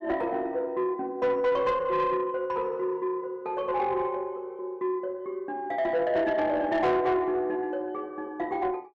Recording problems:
distorted audio; soft clipping, signal-to-distortion ratio 12 dB

